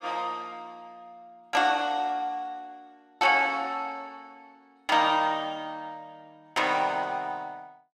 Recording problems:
none

